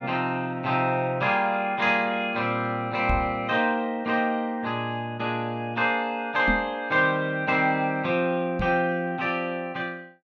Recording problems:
microphone bump; at 3 s, at 6.5 s and at 8.5 s; peak +1 dB vs average level

